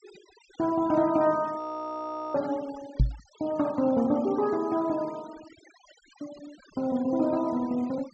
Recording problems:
treble missing; nothing above 8 kHz
noise reduction artefacts; signal-to-artefact ratio 21 dB
frozen audio; at 1.5 s for 0.5 s
knock on the microphone; at 3 s; peak +7 dB vs average level

